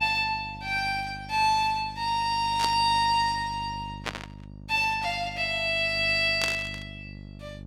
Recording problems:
mains hum; 50 Hz, harmonics up to 650 Hz, SNR 17 dB
static burst; at 2.5 s, at 4 s and at 6.5 s; peak 0 dB vs average level

